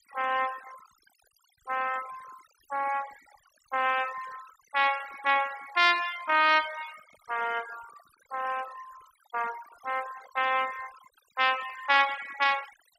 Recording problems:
noise reduction artefacts; signal-to-artefact ratio 16 dB

